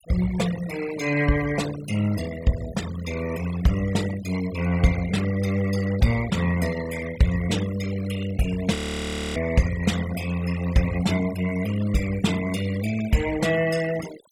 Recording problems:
noise reduction artefacts; signal-to-artefact ratio 13 dB
audio freezing; at 9 s for 0.5 s

